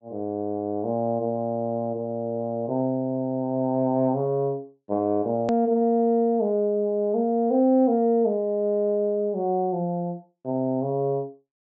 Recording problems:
low-pass filter; nothing above 7.8 kHz
edit click; at 5.5 s

